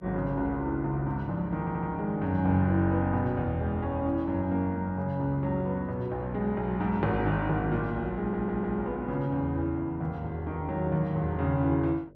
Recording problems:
hum; 50 Hz, harmonics up to 600 Hz, SNR 27 dB
stutter; at 1.5 s and at 8 s

